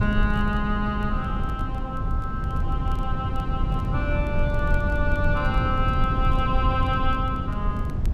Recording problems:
electrical hum; 60 Hz, harmonics up to 540 Hz, SNR 16 dB
low-frequency rumble; below 120 Hz, SNR -1 dB
wind noise; below 310 Hz, SNR 18 dB
crackle; vinyl, SNR 30 dB

